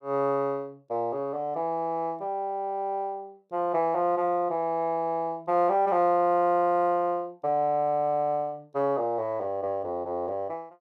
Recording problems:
none

